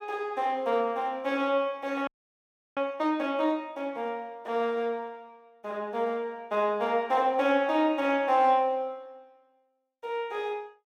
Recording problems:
audio freezing; at 2 s for 0.5 s

